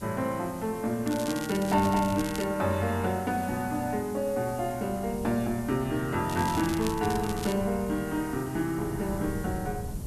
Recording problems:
hiss; SNR 19 dB
wind noise; below 170 Hz, SNR 14 dB
crackle; from 1 to 2.5 s and from 6.5 to 7.5 s; loose cable, SNR 12 dB

